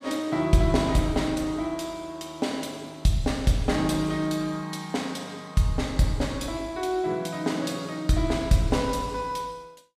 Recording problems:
none

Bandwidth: 15 kHz